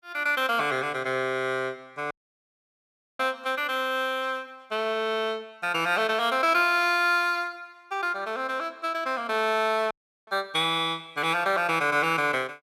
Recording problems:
audio cutting out; at 2 s for 1 s and at 10 s

